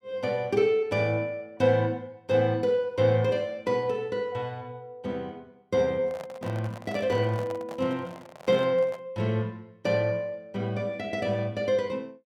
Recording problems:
handling noise; from 6 to 9 s; peak -9 dB vs average level

